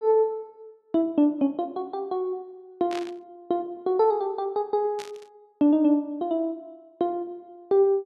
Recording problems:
static burst; at 3 s and at 5 s; peak -9 dB vs average level

